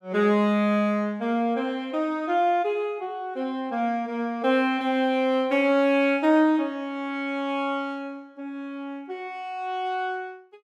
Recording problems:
none

